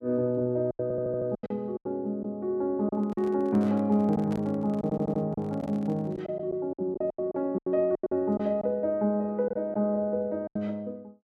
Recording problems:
lost packets; 10% of the sound replaced, filled with silence
stutter; at 1 s and at 5 s
handling noise; from 3 to 6 s; peak -8 dB vs average level

